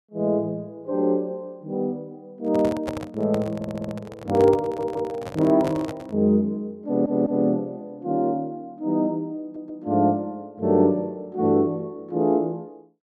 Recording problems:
microphone handling noise; from 2.5 to 6 s; peak -3 dB vs average level
stutter; 4 times, first at 3.5 s

